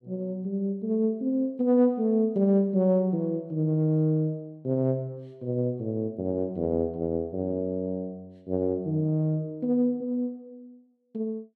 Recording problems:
none

